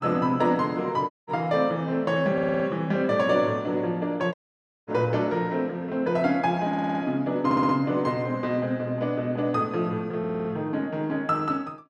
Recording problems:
dropout; at 1 s and at 4.5 s for 0.5 s
stutter; 4 times, first at 2.5 s

